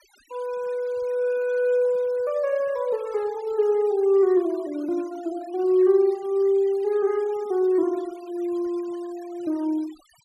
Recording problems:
denoising artefacts; signal-to-artefact ratio 26 dB

